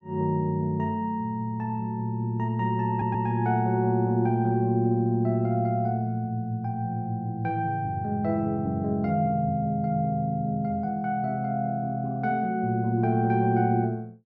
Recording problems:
stutter; at 3 s

